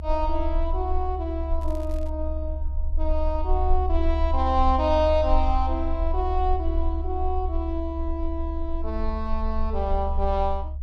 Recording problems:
rumble; below 70 Hz, strongest tone 20 Hz, SNR 1 dB
crackling; at 1.5 s; loose cable, SNR 26 dB

